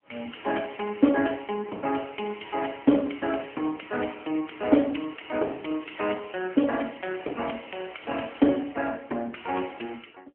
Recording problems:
telephone audio; 220 Hz to 3.2 kHz, AMR-NB

